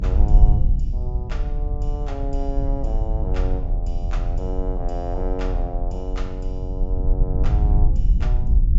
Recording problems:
treble missing; nothing above 8 kHz
rumble; below 62 Hz, SNR -9 dB

